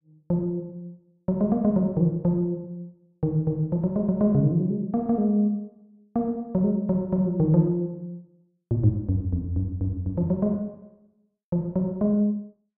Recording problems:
none

